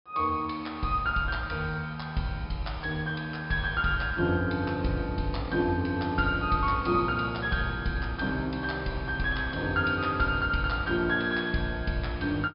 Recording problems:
treble missing; nothing above 5.5 kHz

